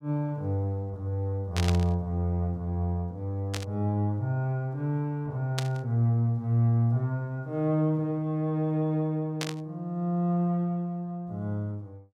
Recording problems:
static burst; 4 times, first at 1.5 s; peak +1 dB vs average level

